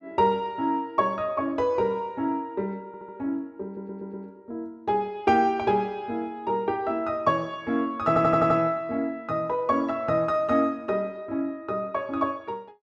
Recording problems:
audio stuttering; at 3 s, at 3.5 s and at 8 s

